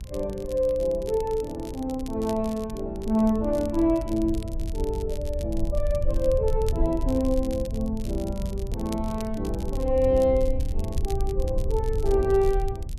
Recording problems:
electrical hum; 60 Hz, harmonics up to 660 Hz, SNR 19 dB
low-frequency rumble; below 70 Hz, SNR 6 dB
crackling; vinyl, SNR 21 dB

